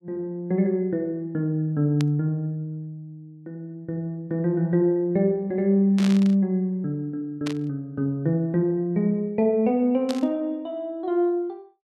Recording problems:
burst of static; 4 times, first at 2 s; peak -5 dB vs average level

